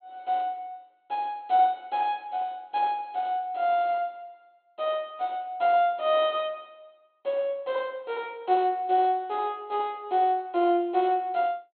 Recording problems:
treble missing; nothing above 4 kHz

